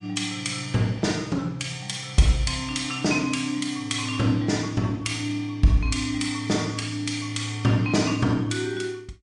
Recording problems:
lossy codec; MP3, log-spectral distance 4 dB, nothing above 8.5 kHz

